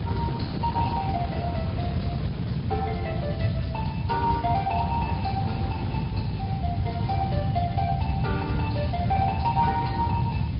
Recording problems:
low-pass filter; nothing above 5 kHz
lossy compression; Speex, then MP3, log-spectral distance 3 dB
hiss; SNR 21 dB
low-frequency rumble; below 180 Hz, SNR -1 dB
wind on the microphone; below 450 Hz, SNR 8 dB

